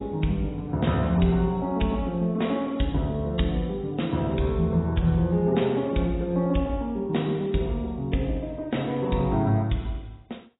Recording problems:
codec artefacts; AAC, log-spectral distance 3 dB, nothing above 3.8 kHz

